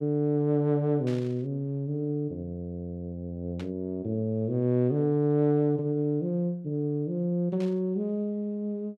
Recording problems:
static burst; at 1 s, at 3.5 s and at 7.5 s; peak -13 dB vs average level

